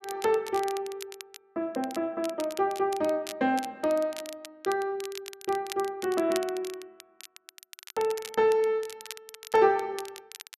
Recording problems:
crackle; vinyl, SNR 15 dB

